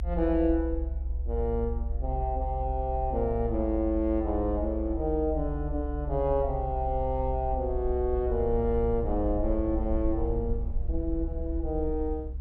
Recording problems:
low-frequency rumble; below 64 Hz, SNR 4 dB

